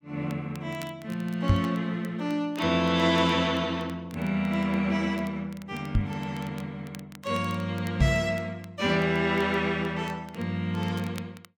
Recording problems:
crackling; vinyl, SNR 24 dB
microphone thump; at 1.5 s, at 6 s and at 8 s; peak +9 dB vs average level

